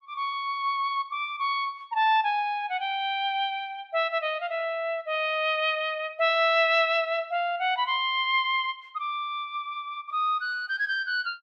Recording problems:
none

